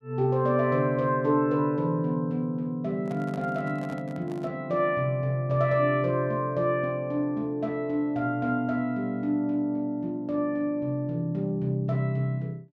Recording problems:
handling noise; from 3 to 4.5 s; peak -11 dB vs average level

